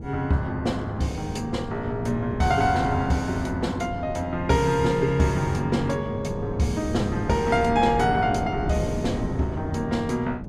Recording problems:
wind on the microphone; below 310 Hz, SNR 8 dB

